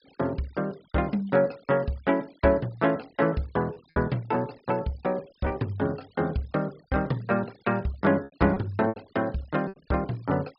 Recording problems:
low-pass filter; nothing above 5.5 kHz
denoising artefacts; signal-to-artefact ratio 27 dB
packet loss; 4% of the sound replaced, filled with repeated pitch periods

